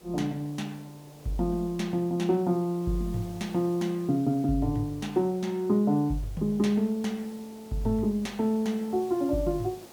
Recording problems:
hiss; SNR 22 dB

